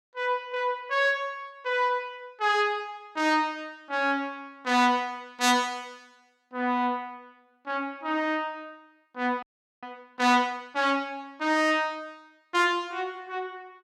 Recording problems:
audio freezing; at 9.5 s

